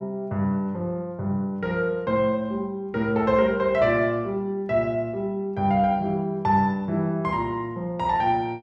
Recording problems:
none

